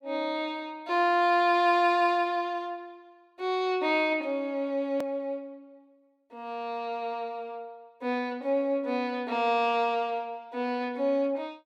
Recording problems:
edit click; at 5 s

